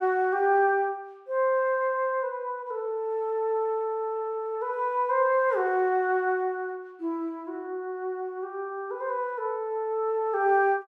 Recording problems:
none

